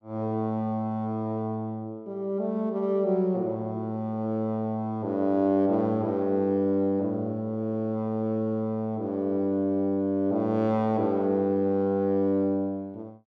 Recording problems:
none

